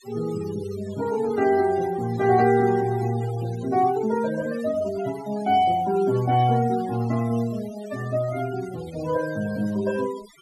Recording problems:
noise reduction artefacts; signal-to-artefact ratio 17 dB

